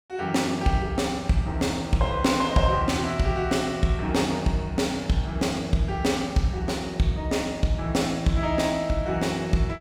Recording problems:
none

